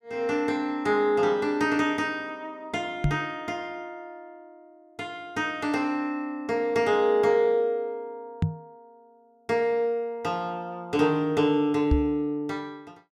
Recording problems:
microphone thump; at 3 s, at 8.5 s and at 12 s; peak +5 dB vs average level

